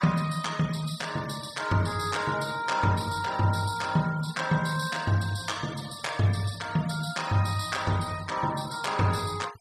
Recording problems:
denoising artefacts; signal-to-artefact ratio 16 dB

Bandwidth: 15 kHz